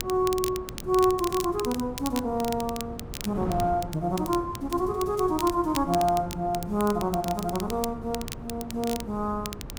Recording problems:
wind on the microphone; below 330 Hz, SNR 12 dB
crackling; vinyl, SNR 12 dB

